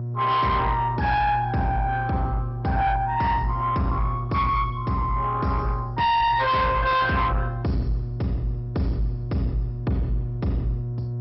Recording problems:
codec artefacts; MP2, log-spectral distance 2 dB, nothing above 5.5 kHz
distorted audio; soft clipping, signal-to-distortion ratio 6 dB
hum; 60 Hz, harmonics up to 360 Hz, SNR 8 dB

